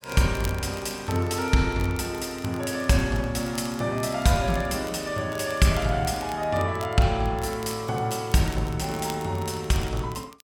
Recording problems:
crackle; vinyl, SNR 20 dB

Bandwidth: 17 kHz